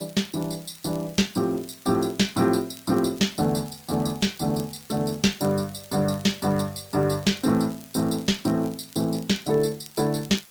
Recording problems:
lossy codec; Opus, log-spectral distance 6 dB, nothing above 19 kHz
hiss; slope 0 dB per octave, SNR 24 dB
crackling; vinyl, SNR 23 dB

